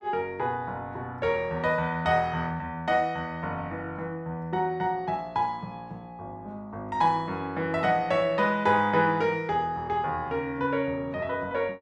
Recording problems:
none

